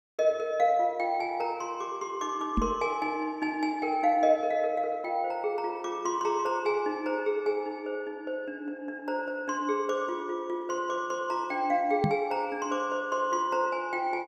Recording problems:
microphone bump; at 2.5 s and at 12 s; peak +5 dB vs average level

